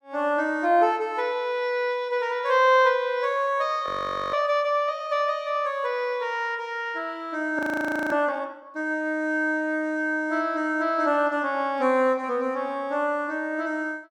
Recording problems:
frozen audio; at 4 s and at 7.5 s for 0.5 s

